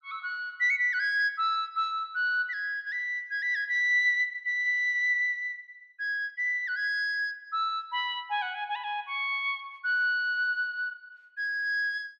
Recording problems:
none

